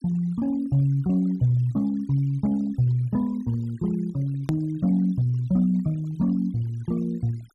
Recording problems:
denoising artefacts; signal-to-artefact ratio 27 dB
edit click; at 4.5 s

